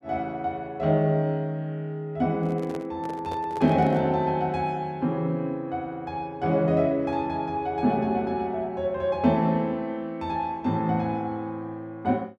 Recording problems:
handling noise; from 2.5 to 4 s; peak -7 dB vs average level

